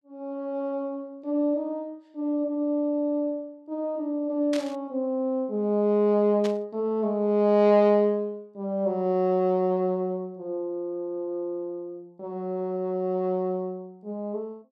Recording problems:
static burst; at 4.5 s and at 6.5 s; peak -6 dB vs average level

